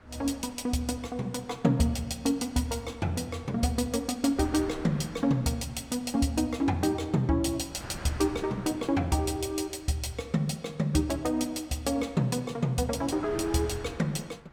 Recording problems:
wind noise; below 1.3 kHz, SNR 18 dB

